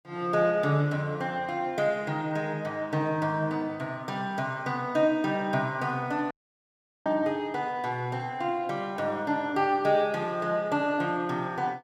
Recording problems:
audio cutting out; at 6.5 s for 1 s

